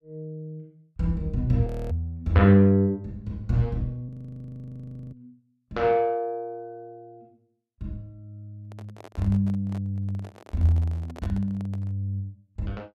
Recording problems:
frozen audio; at 1.5 s and at 4 s for 1 s
microphone handling noise; from 8.5 to 12 s; peak -11 dB vs average level

